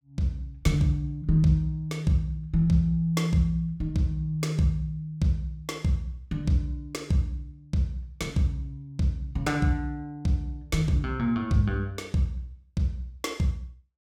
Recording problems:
none

